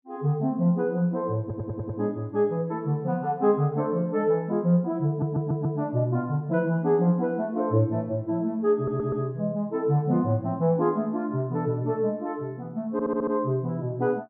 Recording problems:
stutter; 4 times, first at 1.5 s

